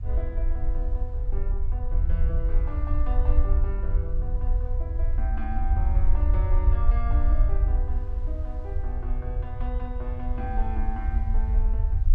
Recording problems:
rumble; below 62 Hz, SNR -11 dB
wind on the microphone; below 1.6 kHz, SNR 23 dB

